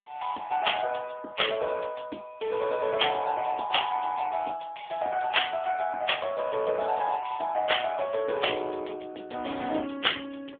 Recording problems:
phone line; 240 Hz to 3.5 kHz, AMR-NB

